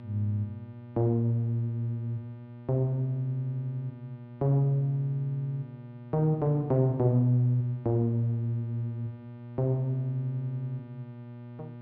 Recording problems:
electrical hum; 60 Hz, harmonics up to 1.2 kHz, SNR 16 dB

